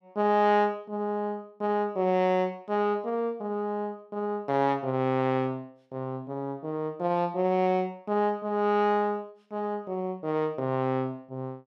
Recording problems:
none

